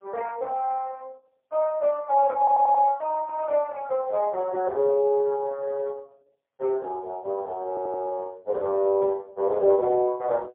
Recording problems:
phone line; 320 Hz to 2.1 kHz, AMR-NB, then MP3
stutter; at 2.5 s and at 7.5 s

